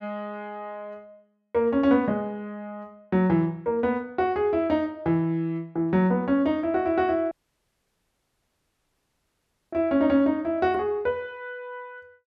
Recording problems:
audio cutting out; at 7.5 s for 2.5 s

